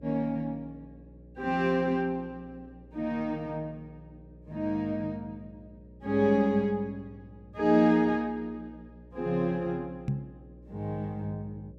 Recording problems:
electrical hum; 60 Hz, harmonics up to 600 Hz, SNR 22 dB
knock on the microphone; at 10 s; peak +2 dB vs average level

